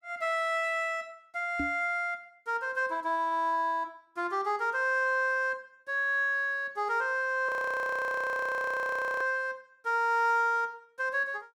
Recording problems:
microphone thump; at 1.5 s; peak -2 dB vs average level
frozen audio; at 7.5 s for 1.5 s

